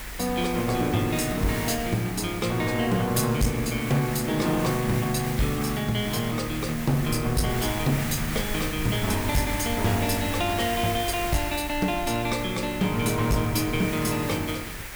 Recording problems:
distorted audio; hard clipping, uneven, signal-to-distortion ratio 11 dB
hiss; SNR 8 dB
low-frequency rumble; below 90 Hz, SNR 15 dB

